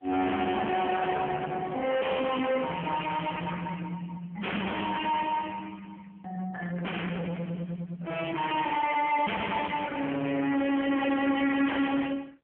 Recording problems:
phone line; 190 Hz to 3.2 kHz, AMR-NB
distorted audio; hard clipping, uneven, signal-to-distortion ratio 6 dB

